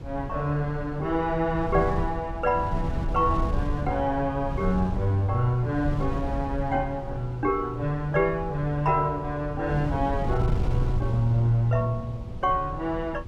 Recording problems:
wind on the microphone; below 120 Hz, SNR 7 dB

